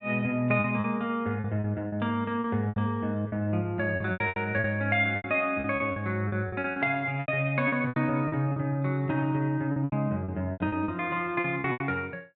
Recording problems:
packet loss; 14% of the sound replaced, filled with repeated pitch periods

